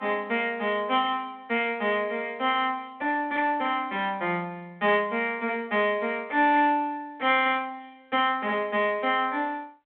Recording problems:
telephone audio; 320 Hz to 3.7 kHz, G.726

